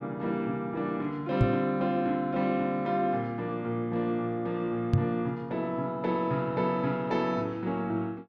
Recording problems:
microphone bump; at 1.5 s and at 5 s; peak +9 dB vs average level

